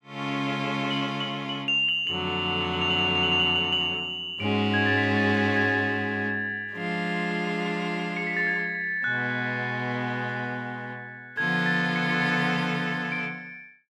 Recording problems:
none

